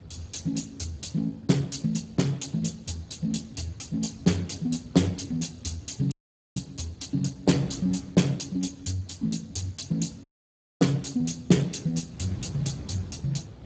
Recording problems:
codec artefacts; Speex, log-spectral distance 5 dB, nothing above 7.6 kHz
wind on the microphone; below 250 Hz, SNR 16 dB
dropout; at 6 s and at 10 s for 0.5 s

